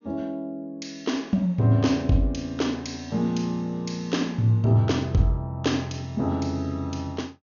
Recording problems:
treble missing; nothing above 6.8 kHz

